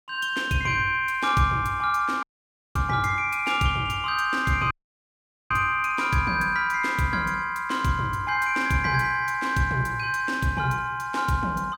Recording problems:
audio cutting out; at 2 s for 0.5 s and at 4.5 s for 1 s

